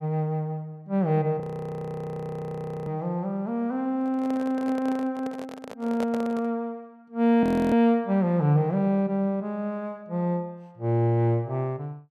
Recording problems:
audio freezing; at 1.5 s for 1.5 s and at 7.5 s
microphone handling noise; from 4 to 6.5 s; peak -5 dB vs average level

